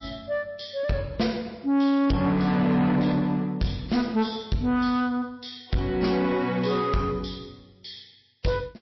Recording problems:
codec artefacts; MP3, log-spectral distance 4 dB, nothing above 5.7 kHz
distorted audio; soft clipping, signal-to-distortion ratio 11 dB

